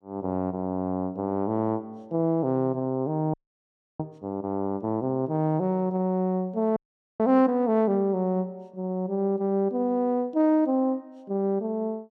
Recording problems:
frozen audio; at 3.5 s for 0.5 s and at 7 s

